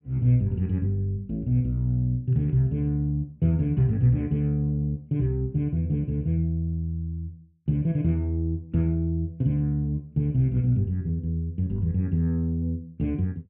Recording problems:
none

